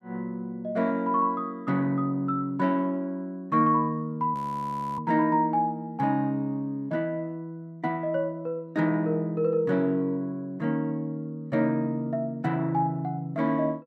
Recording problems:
audio freezing; at 4.5 s for 0.5 s

